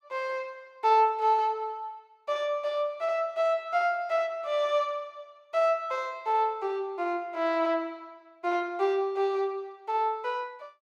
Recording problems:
none

